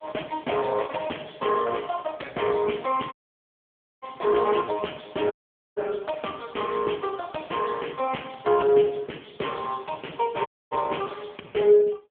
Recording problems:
telephone audio; 260 Hz to 3.4 kHz, AMR-NB
dropout; at 3 s for 1 s, at 5.5 s and at 10 s

